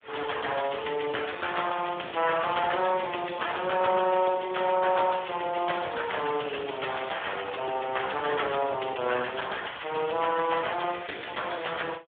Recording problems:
telephone audio; 300 Hz to 3.4 kHz, Speex

